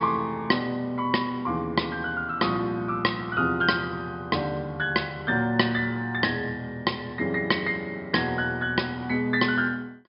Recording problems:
treble cut off; nothing above 5.5 kHz

